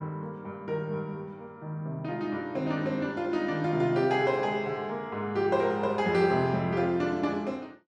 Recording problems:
none

